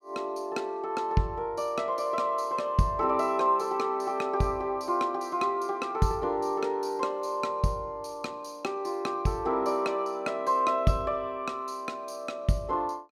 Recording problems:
none

